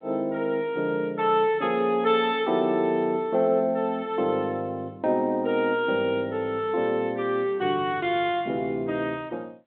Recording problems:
telephone audio; 220 Hz to 3.7 kHz, G.726

